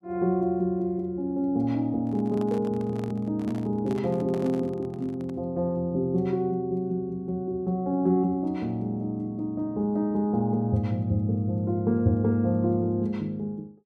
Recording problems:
microphone handling noise; from 2 to 5.5 s; peak -9 dB vs average level

